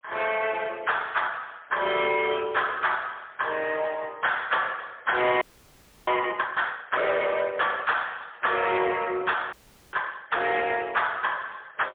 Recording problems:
telephone audio; 320 Hz to 3.4 kHz, AMR-NB, then MP3
distortion; hard clipping, signal-to-distortion ratio 12 dB
frozen audio; at 5.5 s for 0.5 s and at 9.5 s

